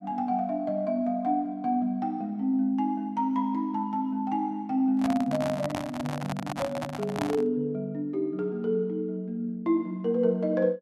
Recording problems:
handling noise; from 5 to 7.5 s; peak +1 dB vs average level

